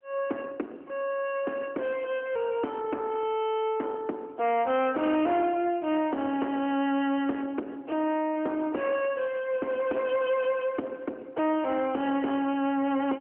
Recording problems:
phone line; 240 Hz to 3.3 kHz, AMR-NB
distorted audio; soft clipping, signal-to-distortion ratio 12 dB

